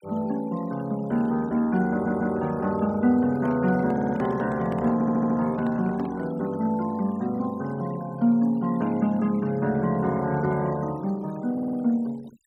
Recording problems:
denoising artefacts; signal-to-artefact ratio 23 dB
stutter; 4 times, first at 2 s
microphone handling noise; from 3.5 to 6.5 s; peak -7 dB vs average level

